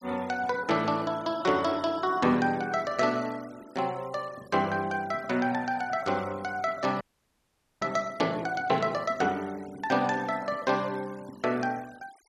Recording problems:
noise reduction artefacts; signal-to-artefact ratio 23 dB
audio freezing; at 7 s for 1 s

